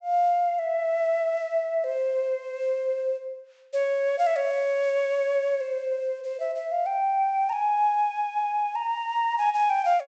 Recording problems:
low-pass filter; nothing above 8 kHz

